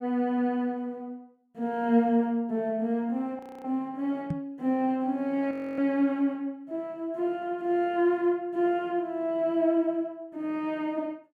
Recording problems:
frozen audio; at 3.5 s and at 5.5 s
microphone thump; at 4.5 s; peak +1 dB vs average level

